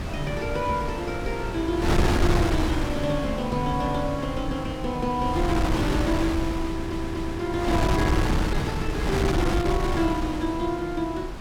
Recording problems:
wind noise; below 400 Hz, SNR 1 dB
audio stuttering; at 6.5 s

